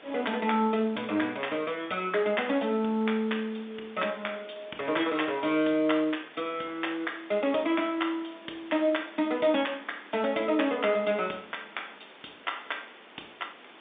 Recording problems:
telephone audio; 220 Hz to 3.6 kHz, G.711
background hiss; SNR 21 dB

